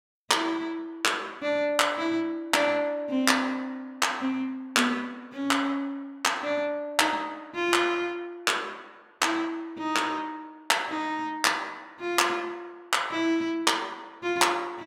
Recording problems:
none

